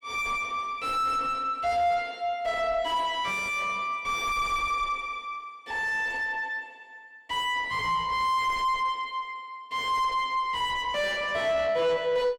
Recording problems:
distorted audio; soft clipping, signal-to-distortion ratio 5 dB

